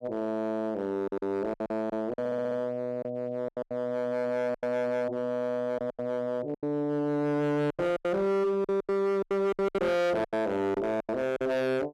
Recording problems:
distorted audio; hard clipping, signal-to-distortion ratio 6 dB
packet loss; 12% of the sound replaced, filled with silence
stutter; at 2 s

